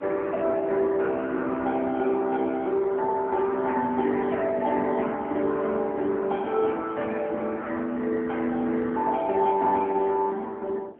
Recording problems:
telephone audio; 220 Hz to 2.3 kHz, AMR-NB
wind on the microphone; below 510 Hz, SNR 22 dB

